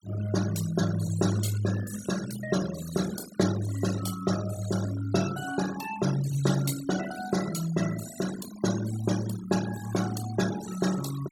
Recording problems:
denoising artefacts; signal-to-artefact ratio 10 dB

